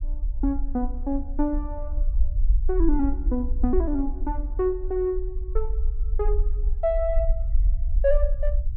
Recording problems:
low-frequency rumble; below 48 Hz, SNR 1 dB

